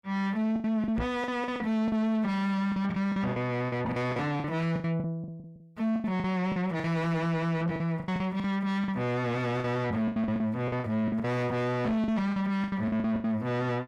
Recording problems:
distorted audio; soft clipping, signal-to-distortion ratio 7 dB
lost packets; 14% of the sound replaced, filled with the last packet
microphone thump; at 1 s; peak 0 dB vs average level

